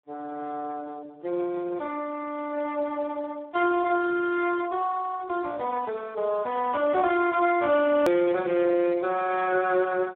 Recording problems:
telephone audio; 260 Hz to 2.9 kHz, Speex
hard cut with a click; at 8 s

